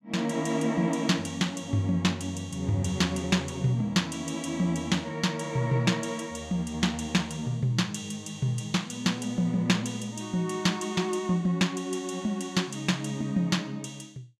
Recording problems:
none

